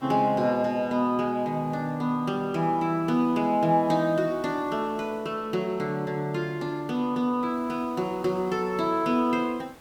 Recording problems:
hiss; slope -5 dB per octave, SNR 26 dB

